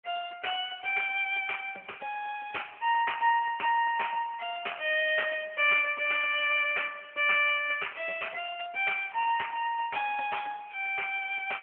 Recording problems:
telephone audio; 410 Hz to 3.1 kHz, AMR-NB

